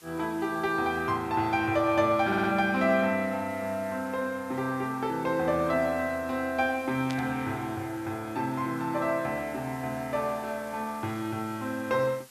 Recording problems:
hiss; slope +1 dB per octave, SNR 23 dB
audio stuttering; at 2.5 s
burst of static; at 7 s; peak -6 dB vs average level

